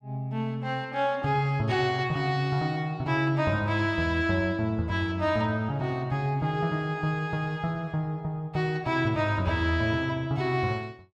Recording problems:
none

